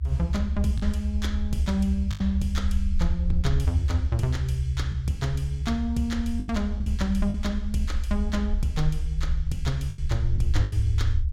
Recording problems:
rumble; below 74 Hz, SNR 0 dB
lost packets; 4% of the sound replaced, filled with the last packet

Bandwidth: 16.5 kHz